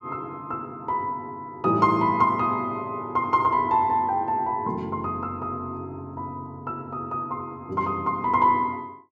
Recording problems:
none

